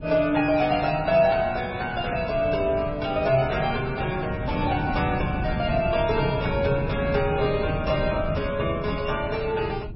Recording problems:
codec artefacts; MP3, log-spectral distance 3 dB, nothing above 5.5 kHz
wind noise; below 210 Hz, SNR 8 dB

